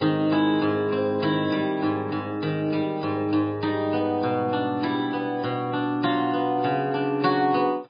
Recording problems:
lossy codec; MP3, log-spectral distance 2 dB, nothing above 4.1 kHz

